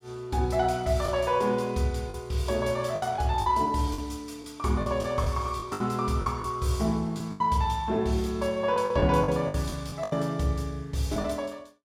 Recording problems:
lost packets; 8% of the sound replaced, filled with the last packet

